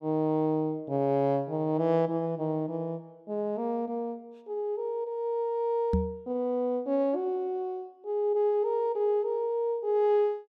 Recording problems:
microphone bump; at 6 s; peak +5 dB vs average level

